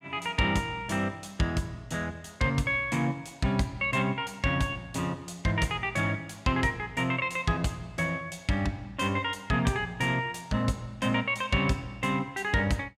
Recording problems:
none

